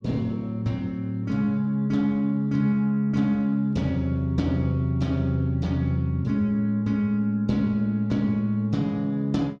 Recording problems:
none

